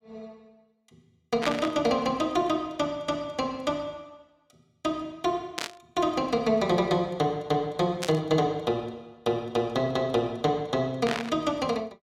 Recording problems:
static burst; 4 times, first at 1.5 s; peak +1 dB vs average level

